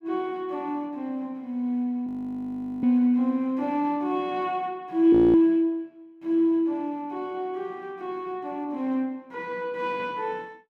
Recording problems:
audio freezing; at 2 s for 1 s and at 5 s

